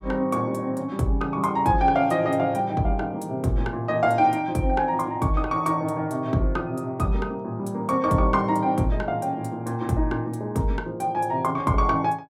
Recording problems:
none

